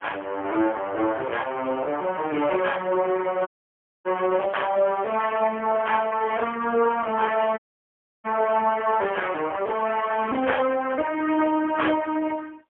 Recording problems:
telephone audio; 280 Hz to 3.3 kHz, AMR-NB, then MP3
dropout; at 3.5 s for 0.5 s and at 7.5 s for 0.5 s
crackle; from 4.5 to 5.5 s and at 10 s; loose cable, SNR 27 dB

